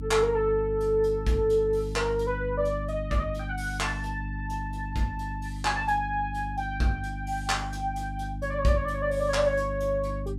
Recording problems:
hum; 50 Hz, harmonics up to 300 Hz, SNR 7 dB

